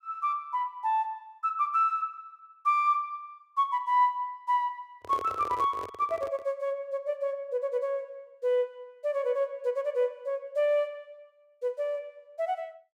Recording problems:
handling noise; from 5 to 6.5 s; peak -6 dB vs average level

